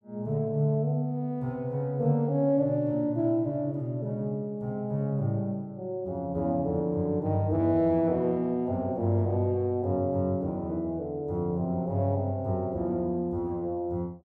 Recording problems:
none

